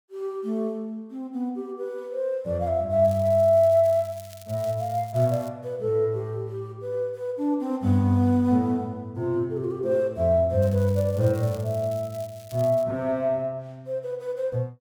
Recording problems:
crackling; from 3 to 5.5 s and from 11 to 13 s; loose cable, SNR 23 dB

